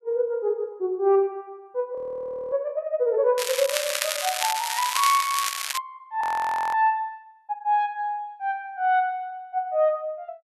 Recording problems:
audio freezing; at 2 s for 0.5 s and at 6 s for 0.5 s
crackle; from 3.5 to 6 s; loose cable, SNR 2 dB

